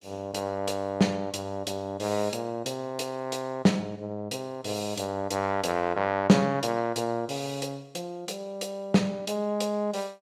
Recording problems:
none

